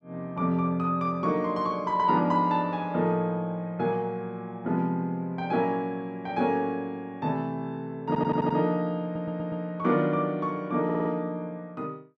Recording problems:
audio stuttering; at 8 s, at 9 s and at 11 s

